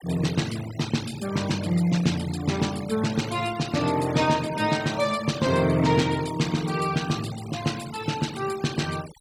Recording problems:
denoising artefacts; signal-to-artefact ratio 15 dB

